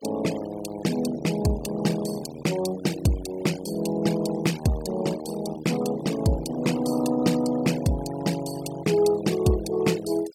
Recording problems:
noise reduction artefacts; signal-to-artefact ratio 15 dB

